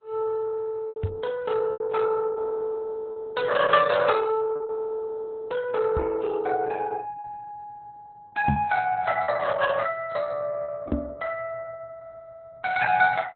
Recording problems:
codec artefacts; AAC, then Opus, log-spectral distance 3 dB, nothing above 4 kHz
packet loss; 3% of the sound replaced, filled with repeated pitch periods
knock on the microphone; 4 times, first at 1 s; peak +6 dB vs average level

